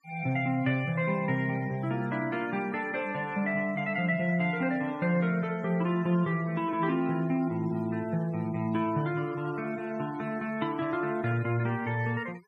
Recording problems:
denoising artefacts; signal-to-artefact ratio 21 dB

